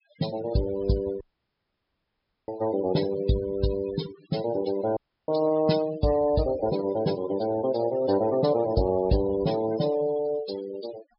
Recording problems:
treble cut off; nothing above 5.3 kHz
noise reduction artefacts; signal-to-artefact ratio 14 dB
dropout; at 1 s for 1.5 s and at 5 s

